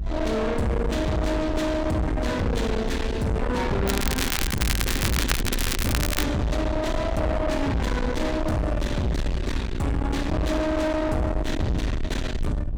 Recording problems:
distortion; soft clipping, signal-to-distortion ratio 6 dB
rumble; below 340 Hz, SNR 4 dB
crackling; from 4 to 6.5 s; loose cable, SNR 4 dB

